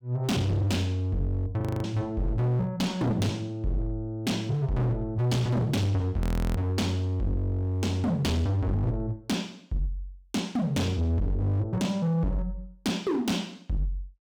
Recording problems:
distortion; hard clipping, signal-to-distortion ratio 8 dB
frozen audio; at 1.5 s and at 6 s

